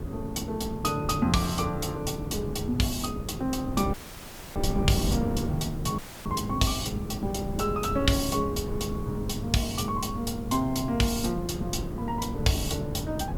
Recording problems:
hum; 60 Hz, harmonics up to 540 Hz, SNR 23 dB
hiss; slope -1 dB per octave, SNR 25 dB
wind on the microphone; below 260 Hz, SNR 5 dB
audio cutting out; at 4 s for 0.5 s and at 6 s

